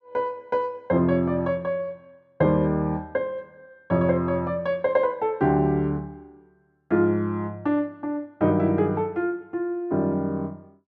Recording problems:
none

